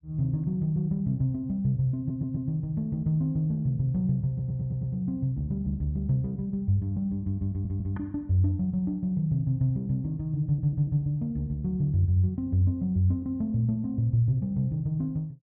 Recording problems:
audio stuttering; 4 times, first at 2 s

